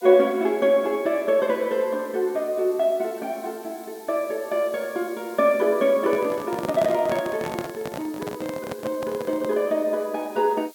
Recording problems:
hiss; slope +4 dB per octave, SNR 23 dB
handling noise; from 6 to 9.5 s; peak -2 dB vs average level

